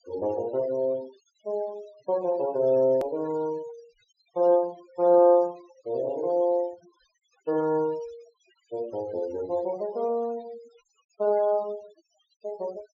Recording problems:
low-pass filter; nothing above 7.2 kHz
denoising artefacts; signal-to-artefact ratio 24 dB
click at an edit; at 3 s

